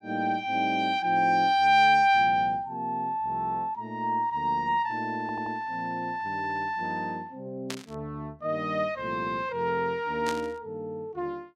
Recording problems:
stutter; at 5 s
burst of static; at 7.5 s and at 10 s; peak -4 dB vs average level

